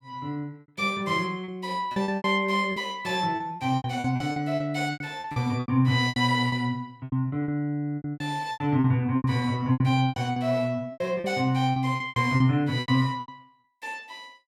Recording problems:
packet loss; 16% of the sound replaced, filled with repeated pitch periods

